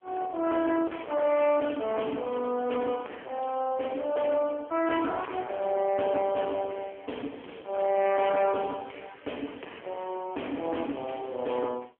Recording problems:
phone line; 280 Hz to 3.3 kHz, AMR-NB
distorted audio; hard clipping, uneven, signal-to-distortion ratio 10 dB

